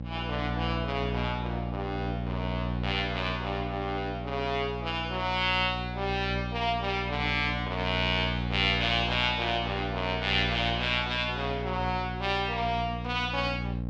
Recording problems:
hum; 60 Hz, harmonics up to 780 Hz, SNR 5 dB

